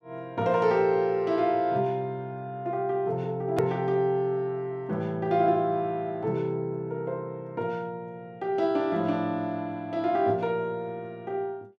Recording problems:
click at an edit; at 3.5 s

